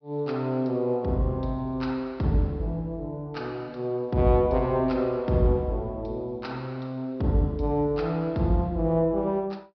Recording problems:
low-pass filter; nothing above 5.5 kHz

